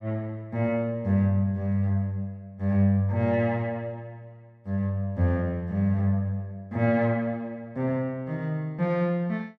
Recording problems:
none

